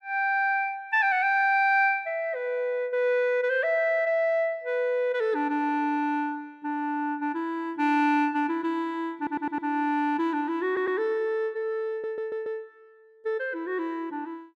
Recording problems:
stutter; at 9 s, at 11 s and at 12 s

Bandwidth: 14 kHz